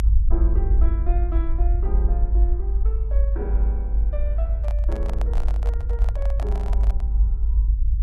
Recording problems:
low-frequency rumble; below 54 Hz, strongest tone 52 Hz, SNR -13 dB
microphone handling noise; from 4.5 to 7 s; peak +4 dB vs average level

